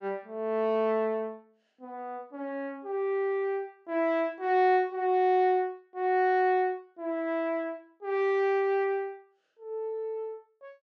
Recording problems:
none

